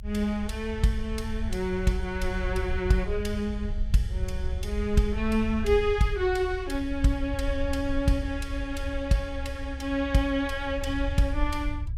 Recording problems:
rumble; below 68 Hz, SNR 6 dB

